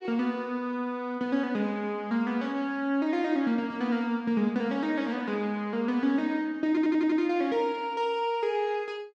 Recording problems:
audio stuttering; at 6.5 s

